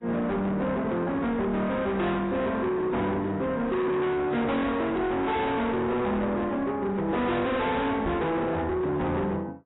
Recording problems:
lossy codec; AAC, log-spectral distance 2 dB, nothing above 3.8 kHz
distorted audio; soft clipping, signal-to-distortion ratio 6 dB
knock on the microphone; at 8 s; peak -1 dB vs average level

